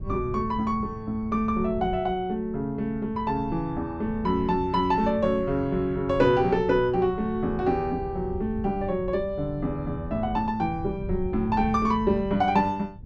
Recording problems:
wind on the microphone; below 140 Hz, SNR 13 dB

